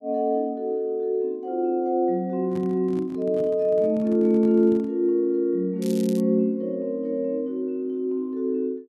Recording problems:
handling noise; from 2.5 to 5 s; peak -10 dB vs average level
crackle; at 6 s; loose cable, SNR 19 dB

